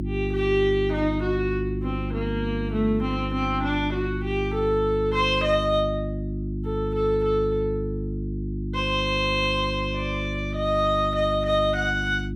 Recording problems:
hum; 50 Hz, harmonics up to 350 Hz, SNR 5 dB

